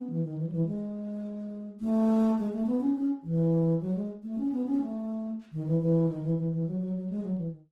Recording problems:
lossy codec; Opus, log-spectral distance 2 dB, nothing above 18.3 kHz

